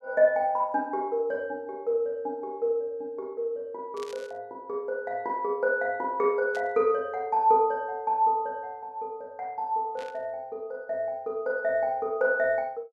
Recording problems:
static burst; at 4 s, at 6.5 s and at 10 s; peak -12 dB vs average level

